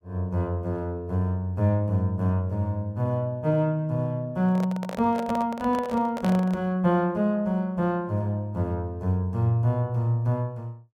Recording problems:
handling noise; from 4.5 to 6.5 s; peak -3 dB vs average level

